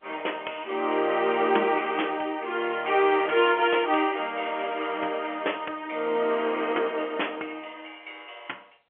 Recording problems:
telephone audio; 280 Hz to 3.3 kHz, G.711

